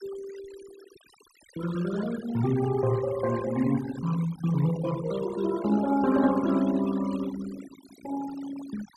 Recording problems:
denoising artefacts; signal-to-artefact ratio 15 dB

